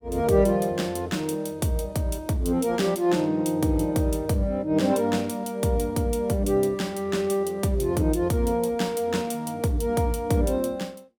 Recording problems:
none

